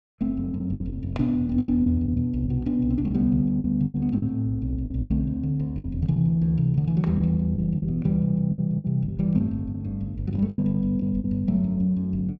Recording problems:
lost packets; 9% of the sound replaced, filled with the last packet

